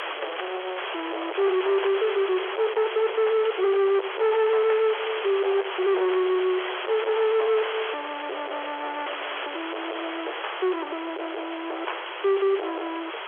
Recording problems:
phone line; 620 Hz to 3.4 kHz, G.711
distortion; soft clipping, signal-to-distortion ratio 7 dB
background hiss; SNR 7 dB

